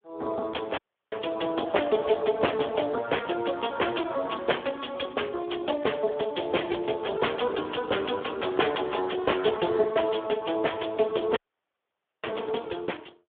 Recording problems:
telephone audio; 300 Hz to 3.4 kHz, Speex
dropout; at 1 s and at 11 s for 1 s

